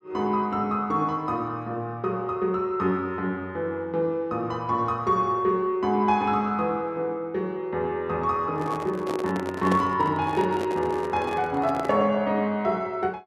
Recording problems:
microphone handling noise; from 8.5 to 12 s; peak +1 dB vs average level

